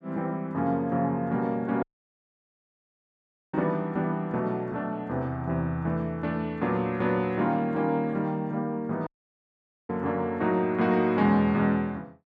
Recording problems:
dropout; at 2 s for 1.5 s and at 9 s for 1 s

